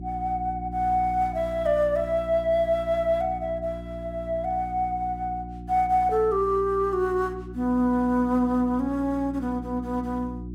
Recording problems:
hum; 60 Hz, harmonics up to 360 Hz, SNR 13 dB

